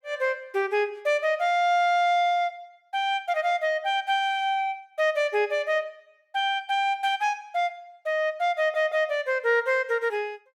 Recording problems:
audio stuttering; at 8.5 s

